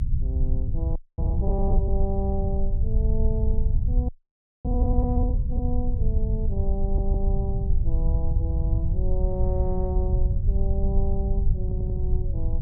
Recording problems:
rumble; below 70 Hz, SNR -7 dB
audio freezing; at 1 s and at 4 s for 0.5 s
stutter; at 7 s and at 12 s

